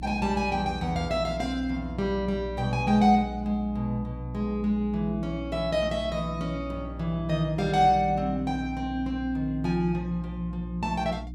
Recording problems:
hum; 60 Hz, harmonics up to 300 Hz, SNR 11 dB

